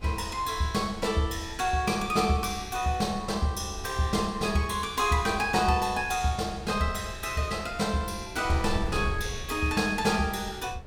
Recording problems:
wind noise; below 110 Hz, SNR 14 dB

